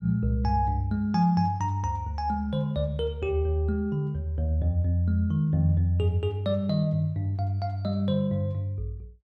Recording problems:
none

